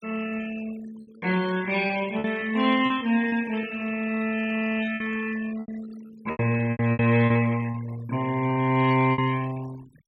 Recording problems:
noise reduction artefacts; signal-to-artefact ratio 17 dB
packet loss; 10% of the sound replaced, filled with repeated pitch periods

